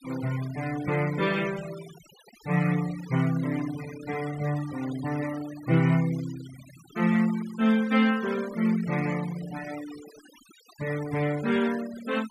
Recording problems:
denoising artefacts; signal-to-artefact ratio 17 dB

